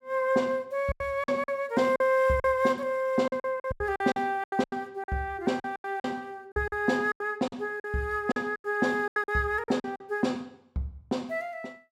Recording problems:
packet loss; 13% of the sound replaced, filled with silence

